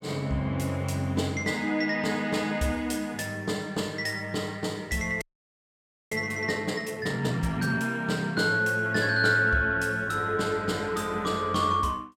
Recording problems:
frozen audio; at 5 s for 1 s

